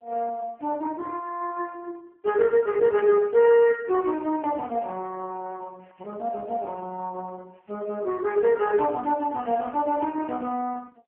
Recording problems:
phone line; 320 Hz to 3.3 kHz, AMR-NB

